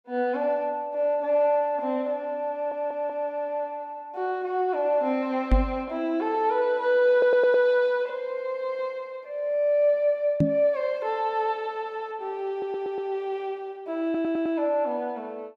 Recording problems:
stutter; 4 times, first at 2.5 s
knock on the microphone; at 5.5 s and at 10 s; peak +7 dB vs average level

